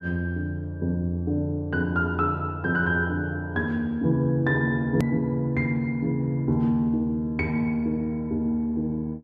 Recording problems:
click at an edit; at 5 s

